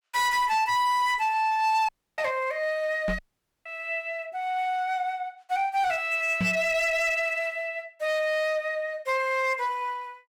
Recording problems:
distortion; hard clipping, signal-to-distortion ratio 10 dB
dropout; at 2 s and at 3 s
microphone bump; at 3 s and at 6.5 s; peak +1 dB vs average level

